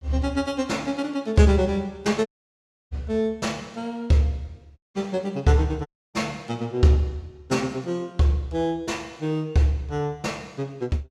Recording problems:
audio cutting out; at 2.5 s for 0.5 s, at 5 s and at 6 s

